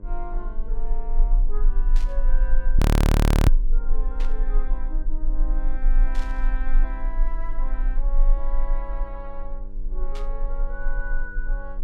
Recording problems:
hum; 50 Hz, harmonics up to 1.1 kHz, SNR 8 dB
rumble; below 36 Hz, strongest tone 22 Hz, SNR -14 dB
burst of static; 4 times, first at 2 s; peak +2 dB vs average level
audio freezing; at 3 s for 0.5 s

